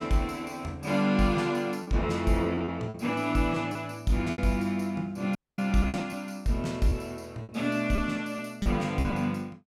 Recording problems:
packet loss; 6% of the sound replaced, filled with repeated pitch periods
audio cutting out; at 5.5 s

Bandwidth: 16 kHz